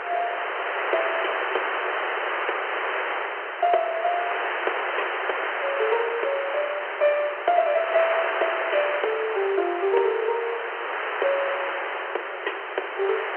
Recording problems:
telephone audio; 340 Hz to 3.1 kHz, G.711
background hiss; SNR 1 dB

